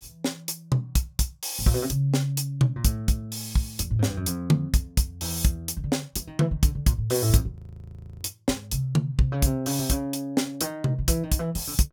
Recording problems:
audio freezing; at 7.5 s for 0.5 s

